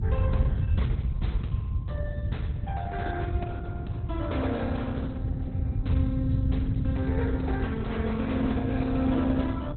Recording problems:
codec artefacts; Opus, log-spectral distance 2 dB, nothing above 4 kHz
wind on the microphone; below 100 Hz, SNR -5 dB

